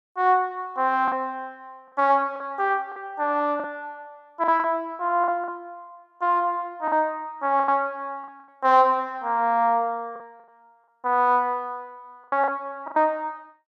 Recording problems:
lost packets; 6% of the sound replaced, filled with the last packet

